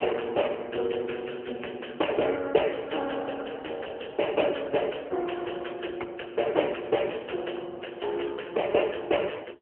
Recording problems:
telephone audio; 280 Hz to 3.1 kHz, AMR-NB

